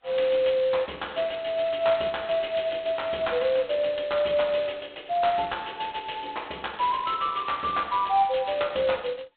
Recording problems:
telephone audio; 220 Hz to 4 kHz, G.726

